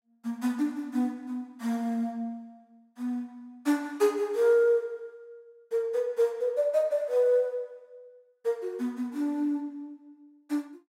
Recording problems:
none

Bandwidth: 16 kHz